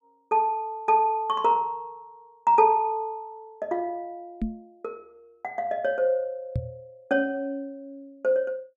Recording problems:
microphone thump; at 4.5 s and at 6.5 s; peak 0 dB vs average level

